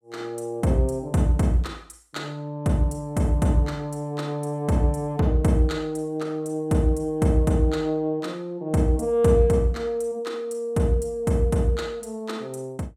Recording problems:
none

